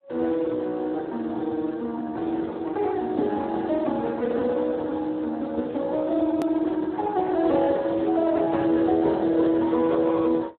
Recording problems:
phone line; 190 Hz to 2.2 kHz, Speex
hard cut with a click; at 6.5 s

